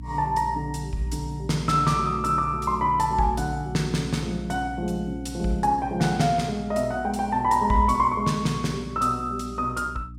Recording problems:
hum; 60 Hz, harmonics up to 300 Hz, SNR 14 dB

